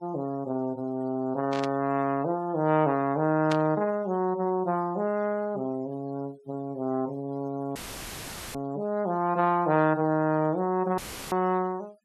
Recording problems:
denoising artefacts; signal-to-artefact ratio 26 dB
burst of static; at 1.5 s and at 3.5 s; peak -3 dB vs average level
audio cutting out; at 8 s for 1 s and at 11 s; filled with static

